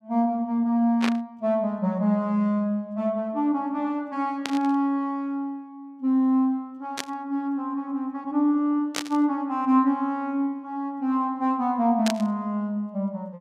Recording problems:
burst of static; 5 times, first at 1 s; peak +1 dB vs average level

